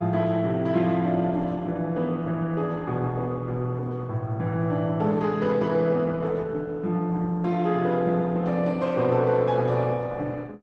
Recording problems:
codec artefacts; Opus, log-spectral distance 2 dB

